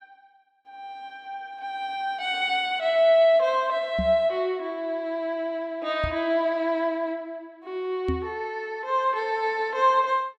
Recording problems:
microphone bump; at 4 s, at 6 s and at 8 s; peak -1 dB vs average level

